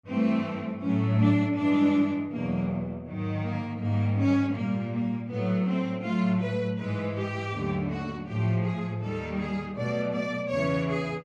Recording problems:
none

